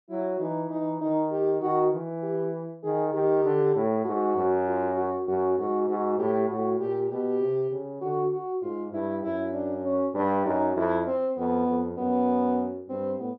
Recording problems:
none

